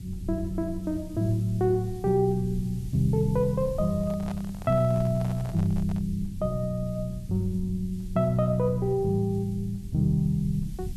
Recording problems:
background hiss; SNR 27 dB
low-frequency rumble; below 110 Hz, SNR 14 dB
microphone handling noise; from 4 to 6 s; peak -10 dB vs average level

